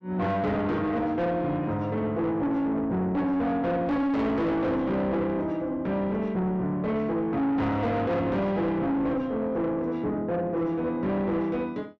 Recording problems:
distorted audio; soft clipping, signal-to-distortion ratio 7 dB

